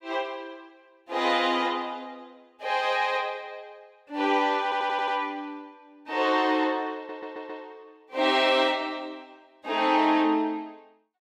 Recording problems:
stutter; at 4.5 s and at 7 s

